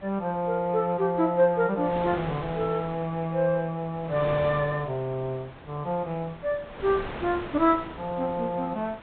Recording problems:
treble cut off; nothing above 4 kHz
wind noise; below 1.5 kHz, SNR 14 dB

